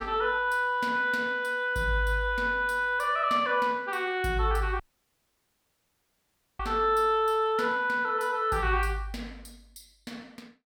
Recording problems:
dropout; at 5 s for 2 s

